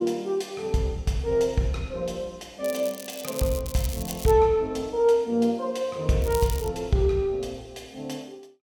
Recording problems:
crackle; from 2.5 to 4.5 s and at 6 s; loose cable, SNR 12 dB

